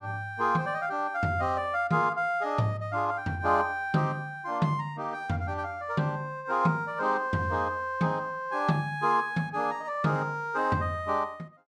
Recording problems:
none

